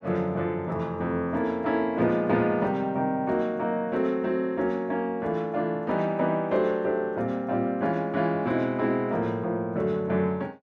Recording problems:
none

